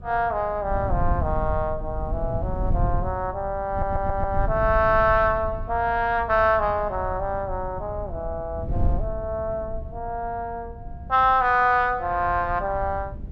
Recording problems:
wind noise; below 100 Hz, SNR 8 dB
stutter; at 3.5 s

